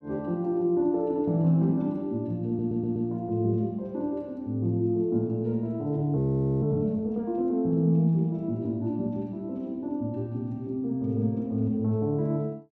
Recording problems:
stutter; at 2.5 s
audio freezing; at 6 s

